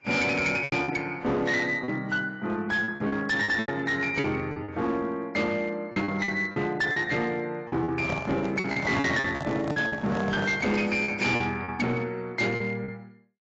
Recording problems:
lossy compression; AAC, log-spectral distance 2 dB, nothing above 7.3 kHz
distortion; hard clipping, uneven, signal-to-distortion ratio 12 dB
packet loss; 10% of the sound replaced, filled with repeated pitch periods
microphone handling noise; from 8 to 11 s; peak 0 dB vs average level

